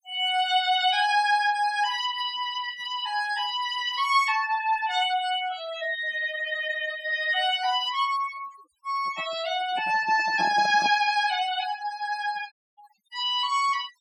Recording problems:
denoising artefacts; signal-to-artefact ratio 16 dB
microphone handling noise; from 9 to 11 s; peak -7 dB vs average level
dropout; at 13 s

